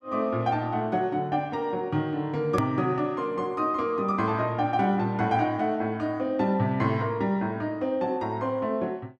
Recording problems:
hard cut with a click; at 2.5 s

